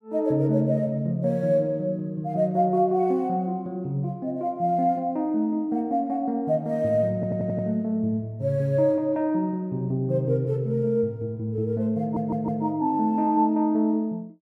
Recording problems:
audio stuttering; at 7 s and at 12 s

